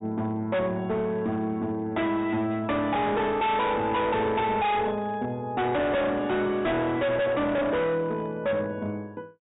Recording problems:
treble cut off; nothing above 4 kHz
distortion; hard clipping, signal-to-distortion ratio 6 dB

